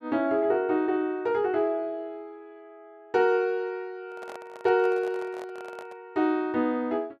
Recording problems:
microphone handling noise; from 4 to 6 s; peak -12 dB vs average level

